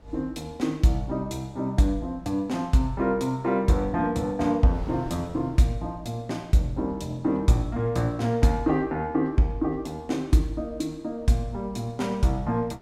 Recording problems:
wind noise; below 410 Hz, SNR 25 dB

